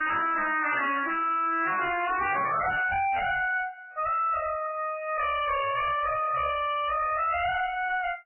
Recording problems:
codec artefacts; MP3, log-spectral distance 7 dB, nothing above 2.5 kHz
distortion; hard clipping, uneven, signal-to-distortion ratio 4 dB

